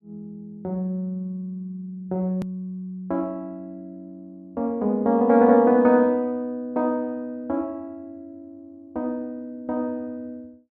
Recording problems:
hard cut with a click; at 2.5 s

